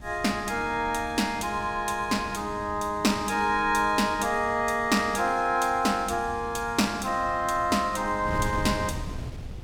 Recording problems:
wind noise; below 180 Hz, SNR 15 dB

